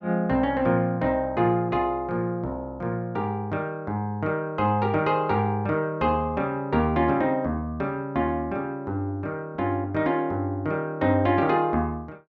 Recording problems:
none

